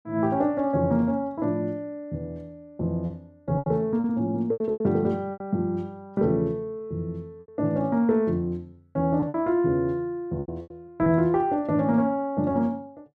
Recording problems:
lost packets; 7% of the sound replaced, filled with repeated pitch periods

